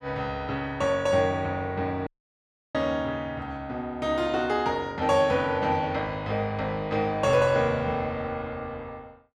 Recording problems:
audio cutting out; at 2 s for 0.5 s

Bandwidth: 12.5 kHz